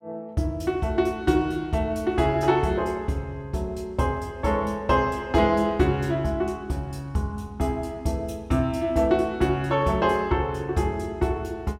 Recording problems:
none

